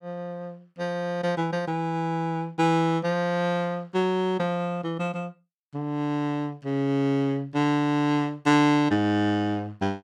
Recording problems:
none

